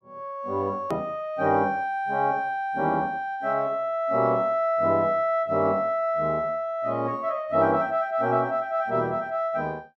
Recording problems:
edit click; at 1 s

